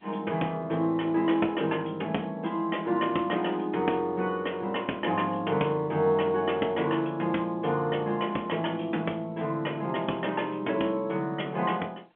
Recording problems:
telephone audio; 240 Hz to 3.5 kHz, G.711

